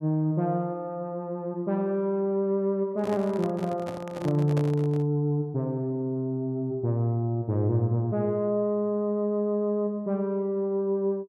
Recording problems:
handling noise; from 3 to 5 s; peak -4 dB vs average level

